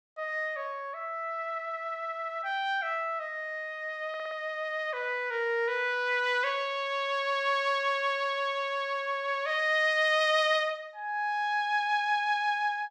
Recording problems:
audio stuttering; at 4 s

